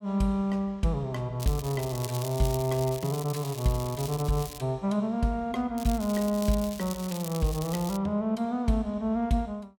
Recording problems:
crackle; from 1.5 to 4.5 s and from 6 to 8 s; loose cable, SNR 12 dB

